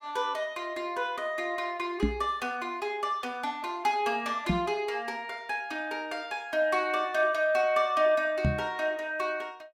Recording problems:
microphone bump; at 2 s, at 4.5 s and at 8.5 s; peak +6 dB vs average level

